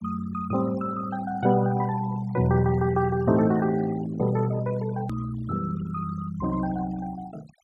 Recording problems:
noise reduction artefacts; signal-to-artefact ratio 18 dB
edit click; at 5 s

